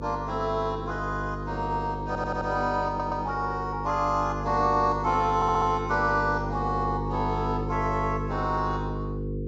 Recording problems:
treble cut off; nothing above 8 kHz
electrical hum; 50 Hz, harmonics up to 500 Hz, SNR 6 dB
audio stuttering; at 2 s, at 3 s and at 5.5 s

